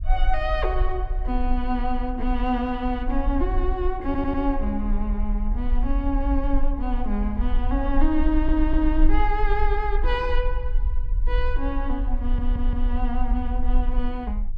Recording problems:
rumble; below 44 Hz, strongest tone 18 Hz, SNR 0 dB
stutter; at 4 s, at 8 s and at 12 s

